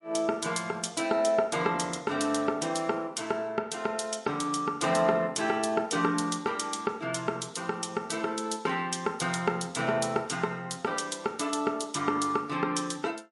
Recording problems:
lossy codec; MP3, log-spectral distance 4 dB, nothing above 11 kHz

